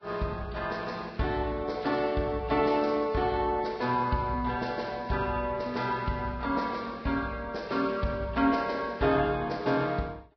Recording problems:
lossy codec; Vorbis, log-spectral distance 3 dB, nothing above 5.3 kHz

